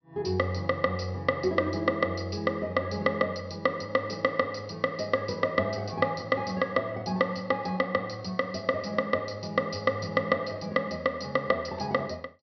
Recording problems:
treble missing; nothing above 5.8 kHz

